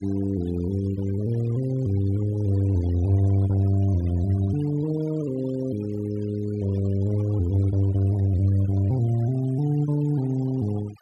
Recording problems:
noise reduction artefacts; signal-to-artefact ratio 20 dB

